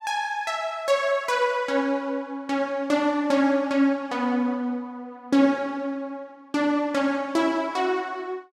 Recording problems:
none

